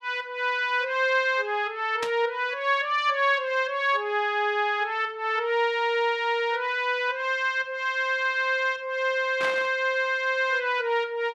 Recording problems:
burst of static; at 2 s and at 9.5 s; peak -3 dB vs average level

